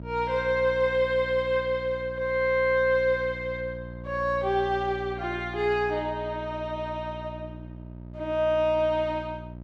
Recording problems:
electrical hum; 60 Hz, harmonics up to 660 Hz, SNR 14 dB

